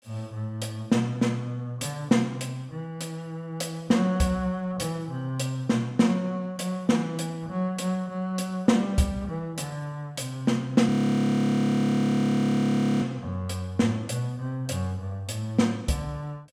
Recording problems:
audio freezing; at 11 s for 2 s

